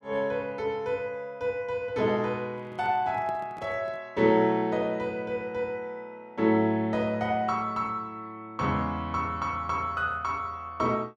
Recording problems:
handling noise; from 2.5 to 4 s; peak -12 dB vs average level

